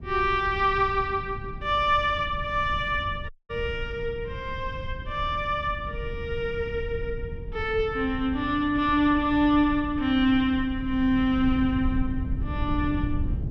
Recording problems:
low-frequency rumble; below 110 Hz, SNR 10 dB
dropout; at 3.5 s

